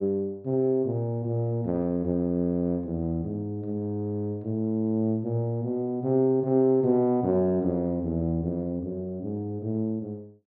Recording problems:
treble missing; nothing above 5.5 kHz

